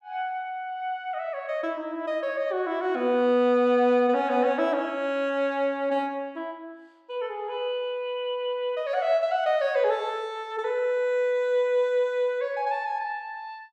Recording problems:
none

